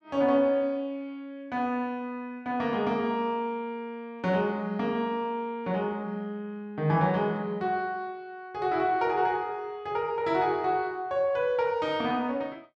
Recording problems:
none

